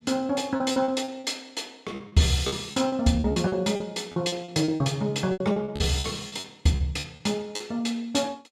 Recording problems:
lost packets; 15% of the sound replaced, filled with repeated pitch periods

